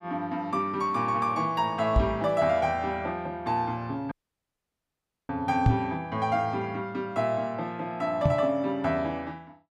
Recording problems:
microphone thump; at 2 s, at 5.5 s and at 8.5 s; peak +9 dB vs average level
dropout; at 4 s for 1 s

